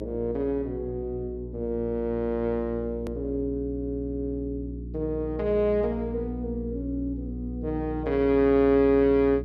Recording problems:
hum; 60 Hz, harmonics up to 420 Hz, SNR 10 dB
edit click; at 3 s

